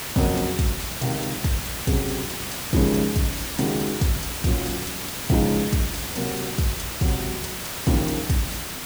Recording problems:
background hiss; slope -2 dB per octave, SNR 4 dB

